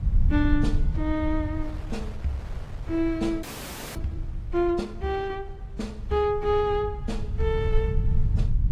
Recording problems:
lossy compression; AAC, log-spectral distance 2 dB
rumble; below 82 Hz, SNR 2 dB
wind on the microphone; below 700 Hz, SNR 20 dB
frozen audio; at 3.5 s for 0.5 s

